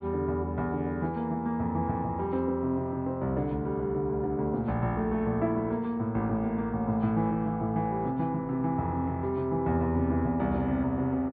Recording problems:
low-pass filter; nothing above 4.5 kHz

